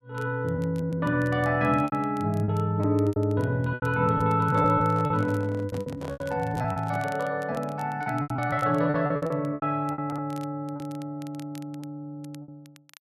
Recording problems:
crackle; vinyl, SNR 27 dB
lost packets; 12% of the sound replaced, filled with repeated pitch periods
microphone handling noise; from 4.5 to 7 s; peak -9 dB vs average level

